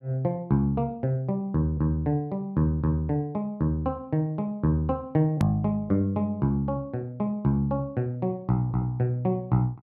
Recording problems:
click at an edit; at 5.5 s

